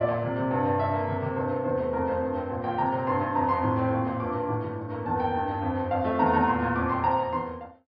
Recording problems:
low-pass filter; nothing above 5.4 kHz

